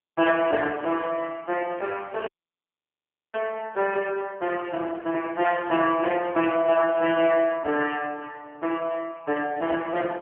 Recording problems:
telephone audio; 240 Hz to 2.8 kHz, AMR-NB
audio cutting out; at 2.5 s for 1 s

